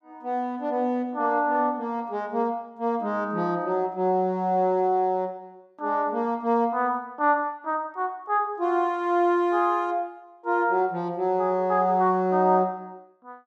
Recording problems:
none

